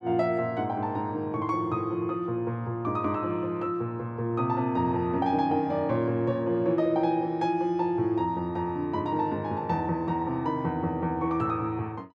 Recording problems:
none

